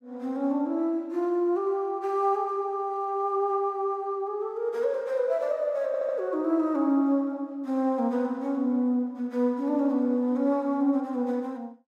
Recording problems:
stutter; at 6 s

